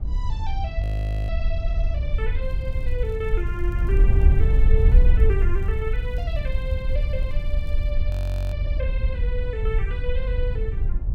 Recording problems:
wind on the microphone; below 64 Hz, SNR -9 dB
audio freezing; at 1 s and at 8 s
crackling; from 2.5 to 8 s; loose cable, SNR 27 dB

